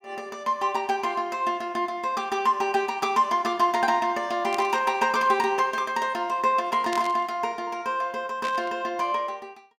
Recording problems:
burst of static; at 4.5 s, at 7 s and at 8.5 s; peak -6 dB vs average level

